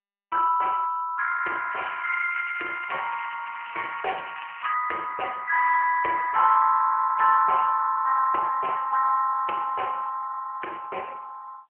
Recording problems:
phone line; 300 Hz to 2.8 kHz, AMR-NB
crackle; from 1.5 to 5 s; loose cable, SNR 16 dB

